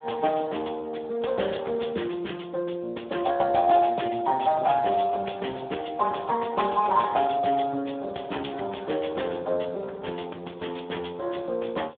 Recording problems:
telephone audio; 260 Hz to 3.4 kHz, Speex

